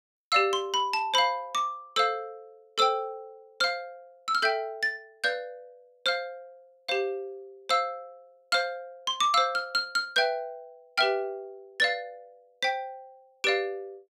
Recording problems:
none

